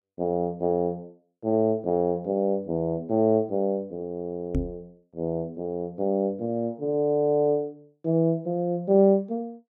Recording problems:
microphone thump; at 4.5 s; peak +2 dB vs average level

